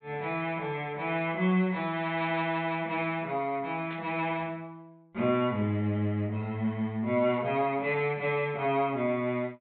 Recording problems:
treble cut off; nothing above 4 kHz
static burst; at 4 s; peak -12 dB vs average level

